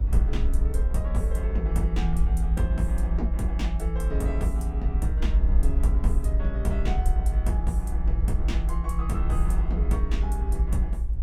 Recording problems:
low-frequency rumble; below 58 Hz, SNR -7 dB

